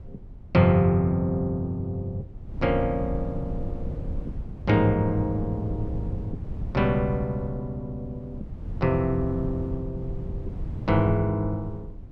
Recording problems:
wind on the microphone; below 130 Hz, SNR 10 dB

